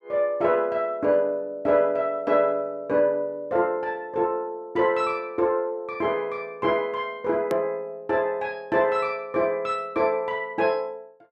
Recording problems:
edit click; at 7.5 s

